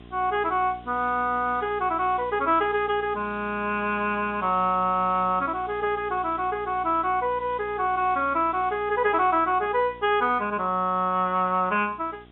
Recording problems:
treble cut off; nothing above 3.6 kHz
hum; 60 Hz, harmonics up to 1.5 kHz, SNR 23 dB
background hiss; SNR 30 dB

